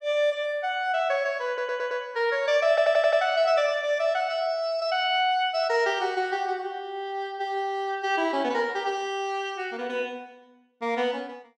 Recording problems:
audio stuttering; at 1.5 s and at 2.5 s

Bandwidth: 16 kHz